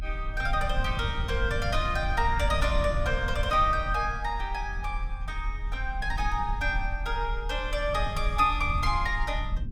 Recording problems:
rumble; below 68 Hz, SNR 4 dB

